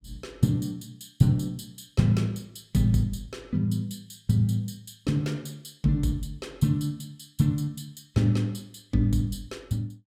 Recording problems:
none

